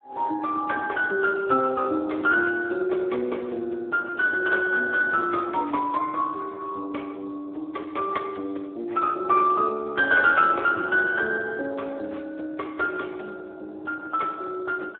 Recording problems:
telephone audio; 260 Hz to 2.1 kHz, Speex

